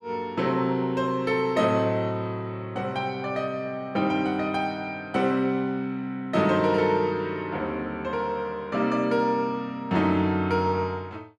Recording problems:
none

